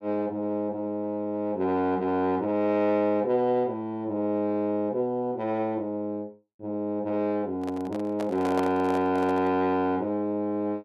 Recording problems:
microphone handling noise; from 7.5 to 9.5 s; peak -2 dB vs average level

